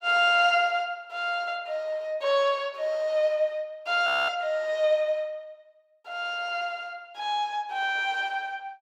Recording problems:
audio freezing; at 4 s

